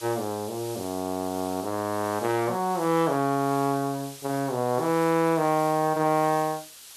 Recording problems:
background hiss; slope +2 dB per octave, SNR 16 dB

